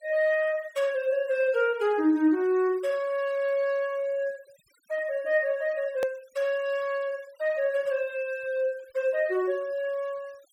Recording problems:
denoising artefacts; signal-to-artefact ratio 26 dB
hard cut with a click; at 6 s

